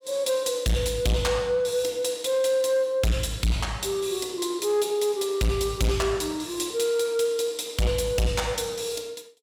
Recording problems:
distorted audio; soft clipping, signal-to-distortion ratio 8 dB

